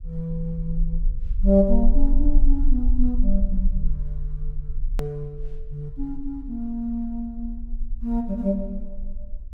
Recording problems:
rumble; below 36 Hz, strongest tone 18 Hz, SNR 1 dB
edit click; at 5 s

